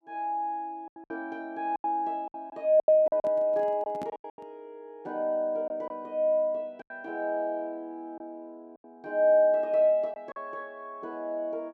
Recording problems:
packet loss; 8% of the sound replaced, filled with silence
microphone handling noise; from 3 to 4.5 s; peak -7 dB vs average level

